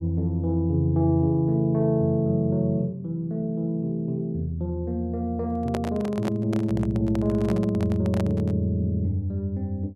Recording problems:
microphone handling noise; from 5.5 to 8.5 s; peak -2 dB vs average level

